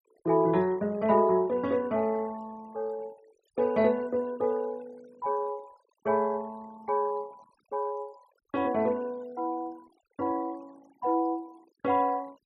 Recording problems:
noise reduction artefacts; signal-to-artefact ratio 26 dB

